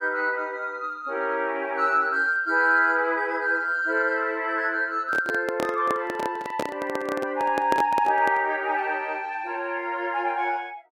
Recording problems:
handling noise; from 5 to 8.5 s; peak +1 dB vs average level

